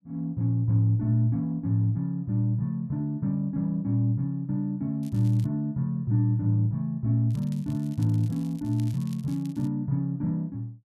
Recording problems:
crackling; at 5 s and from 7.5 to 9.5 s; loose cable, SNR 27 dB

